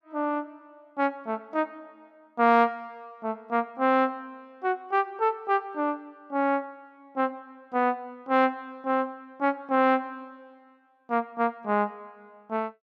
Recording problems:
none

